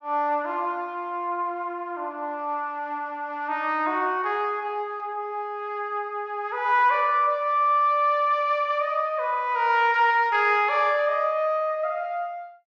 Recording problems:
none

